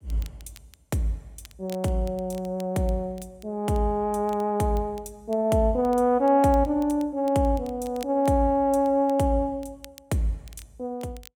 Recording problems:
crackling; vinyl, SNR 27 dB

